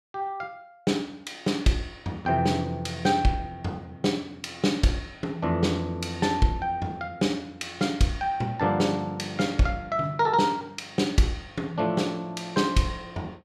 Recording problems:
none

